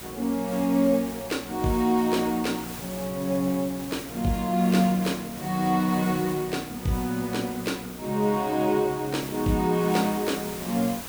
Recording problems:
mains hum; 60 Hz, harmonics up to 780 Hz, SNR 22 dB
hiss; slope -2 dB per octave, SNR 13 dB

